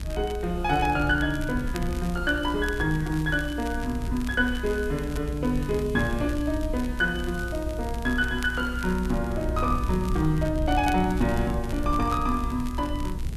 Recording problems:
hiss; SNR 23 dB
rumble; below 80 Hz, SNR 6 dB
crackling; vinyl, SNR 19 dB

